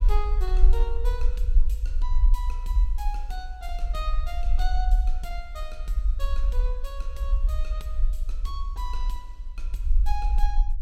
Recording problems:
low-frequency rumble; below 46 Hz, SNR -11 dB

